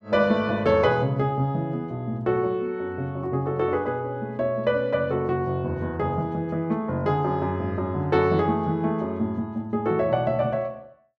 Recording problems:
none

